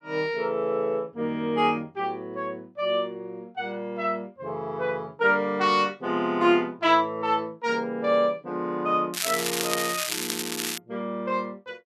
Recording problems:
crackling; from 9 to 11 s; loose cable, SNR 2 dB

